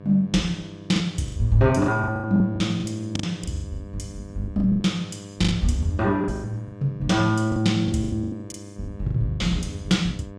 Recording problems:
hum; 50 Hz, harmonics up to 1.7 kHz, SNR 17 dB
lost packets; 16% of the sound replaced, filled with the last packet

